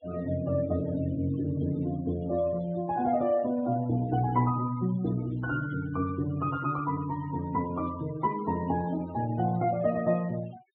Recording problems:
treble missing; nothing above 4 kHz
denoising artefacts; signal-to-artefact ratio 20 dB

